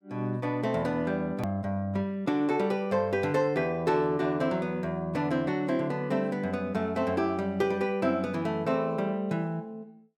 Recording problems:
hard cut with a click; at 1.5 s

